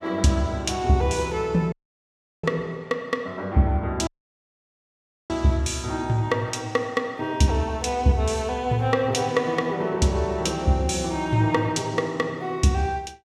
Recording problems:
dropout; at 1.5 s for 0.5 s and at 4 s for 1 s

